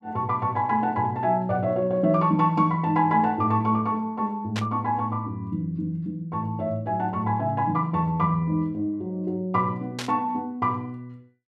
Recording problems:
burst of static; at 4.5 s and at 10 s; peak -3 dB vs average level

